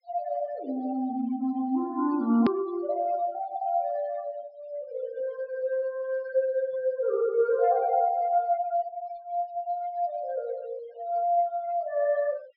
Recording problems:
treble missing; nothing above 5.5 kHz
noise reduction artefacts; signal-to-artefact ratio 23 dB
click at an edit; at 2.5 s

